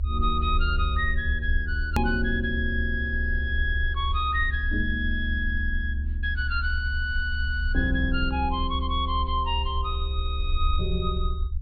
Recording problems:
treble missing; nothing above 4.7 kHz
low-frequency rumble; below 72 Hz, SNR 1 dB
edit click; at 2 s

